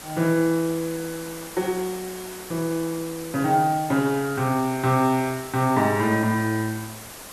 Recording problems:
background hiss; slope -3 dB per octave, SNR 14 dB

